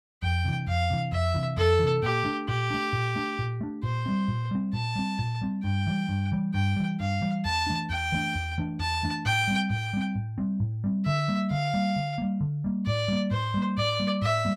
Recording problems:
none

